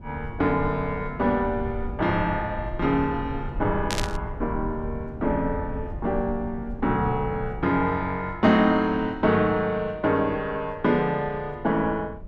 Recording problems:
rumble; below 110 Hz, SNR 13 dB
burst of static; at 4 s; peak +1 dB vs average level

